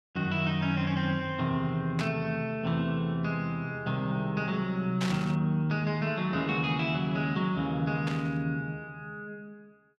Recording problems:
static burst; at 2 s, at 5 s and at 8 s; peak -2 dB vs average level

